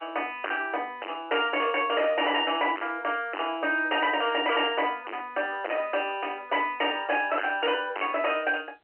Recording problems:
telephone audio; 260 Hz to 3.1 kHz, G.711
distortion; hard clipping, signal-to-distortion ratio 2 dB

